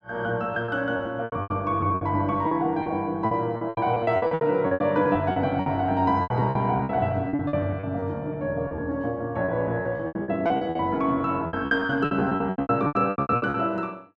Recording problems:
lost packets; 19% of the sound replaced, filled with repeated pitch periods

